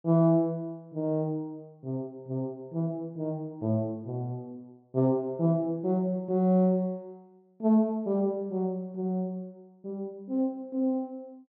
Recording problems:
low-pass filter; nothing above 6.8 kHz

